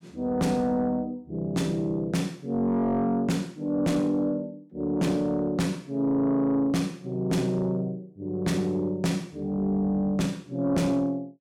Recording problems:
distorted audio; soft clipping, signal-to-distortion ratio 11 dB

